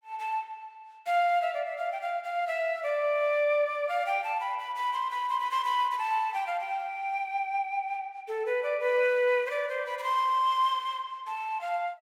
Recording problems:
none

